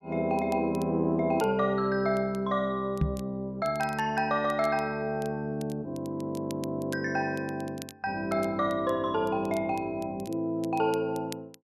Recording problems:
crackling; vinyl, SNR 22 dB
microphone thump; at 3 s; peak +6 dB vs average level

